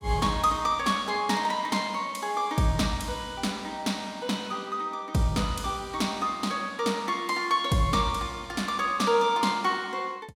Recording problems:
none

